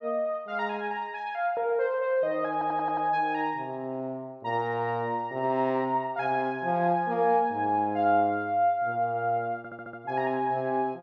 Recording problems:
audio stuttering; at 2.5 s and at 9.5 s

